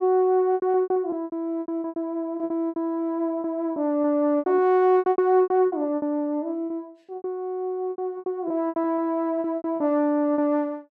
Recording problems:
packet loss; 17% of the sound replaced, filled with repeated pitch periods

